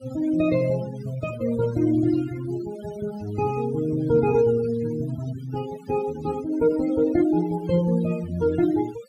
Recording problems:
denoising artefacts; signal-to-artefact ratio 17 dB

